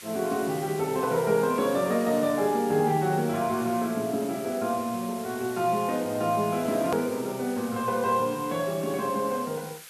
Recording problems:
background hiss; SNR 16 dB
hard cut with a click; at 7 s

